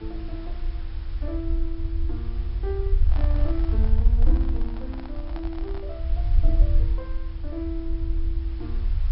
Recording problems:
treble cut off; nothing above 5.4 kHz
hiss; SNR 15 dB
rumble; below 62 Hz, SNR -10 dB
handling noise; from 3 to 6 s; peak 0 dB vs average level

